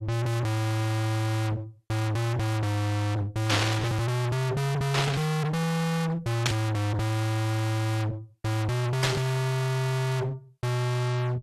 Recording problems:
lossy codec; AAC, log-spectral distance 3 dB, nothing above 13.1 kHz
distorted audio; hard clipping, uneven, signal-to-distortion ratio 3 dB
static burst; 4 times, first at 3.5 s; peak +5 dB vs average level

